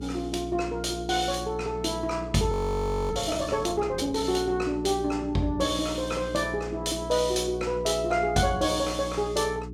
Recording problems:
hum; 60 Hz, harmonics up to 420 Hz, SNR 11 dB
frozen audio; at 2.5 s for 0.5 s

